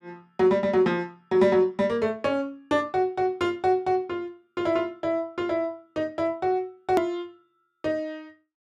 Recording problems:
click at an edit; at 7 s

